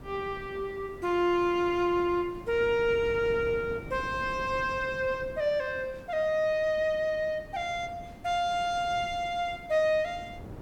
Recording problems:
background hiss; slope -5 dB per octave, SNR 28 dB
wind noise; below 370 Hz, SNR 17 dB

